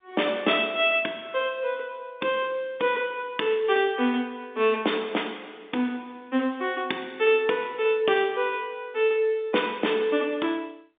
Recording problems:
phone line; 220 Hz to 3.7 kHz, G.711

